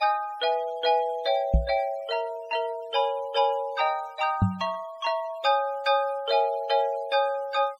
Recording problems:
noise reduction artefacts; signal-to-artefact ratio 24 dB
knock on the microphone; at 1.5 s and at 4.5 s; peak +8 dB vs average level

